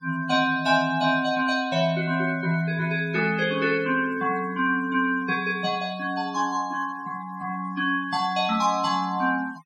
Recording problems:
denoising artefacts; signal-to-artefact ratio 21 dB

